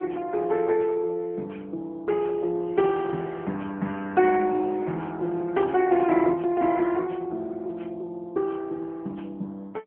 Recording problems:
telephone audio; 170 Hz to 3.4 kHz, AMR-NB

